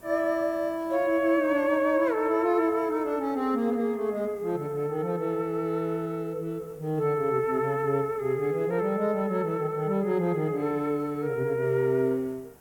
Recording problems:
background hiss; SNR 27 dB

